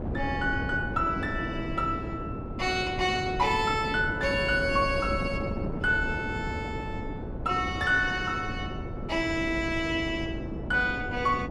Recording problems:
wind noise; below 350 Hz, SNR 7 dB

